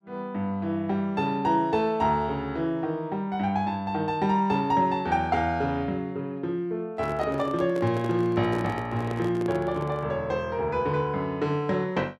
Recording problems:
handling noise; from 7 to 10 s; peak -6 dB vs average level

